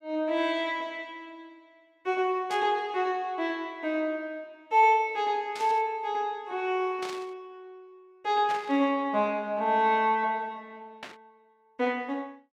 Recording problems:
static burst; 5 times, first at 2.5 s; peak -8 dB vs average level

